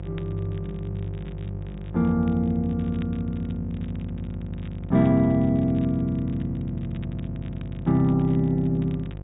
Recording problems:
low-pass filter; nothing above 4 kHz
mains hum; 50 Hz, harmonics up to 700 Hz, SNR 11 dB
crackle; vinyl, SNR 29 dB

